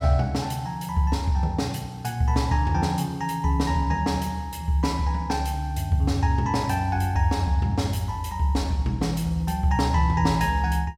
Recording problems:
none

